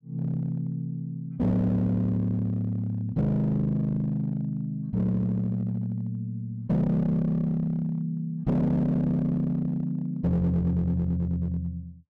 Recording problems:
distorted audio; hard clipping, uneven, signal-to-distortion ratio 11 dB

